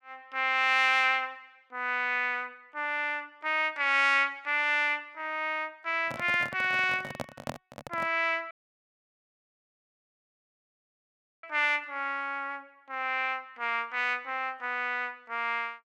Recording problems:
microphone handling noise; from 6 to 8 s; peak -2 dB vs average level
dropout; at 8.5 s for 3 s

